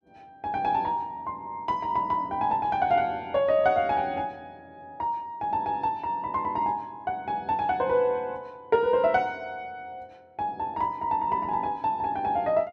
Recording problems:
none

